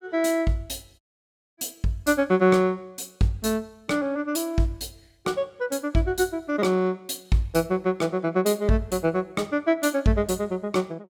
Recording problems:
dropout; at 1 s for 0.5 s

